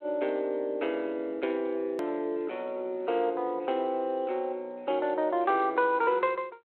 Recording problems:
telephone audio; 300 Hz to 3.3 kHz, G.726
edit click; at 2 s

